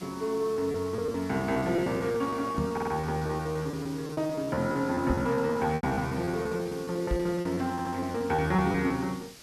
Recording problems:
background hiss; SNR 18 dB
lost packets; 16% of the sound replaced, filled with repeated pitch periods
knock on the microphone; at 2.5 s, at 5 s and at 7 s; peak +2 dB vs average level
audio stuttering; at 2.5 s and at 7.5 s

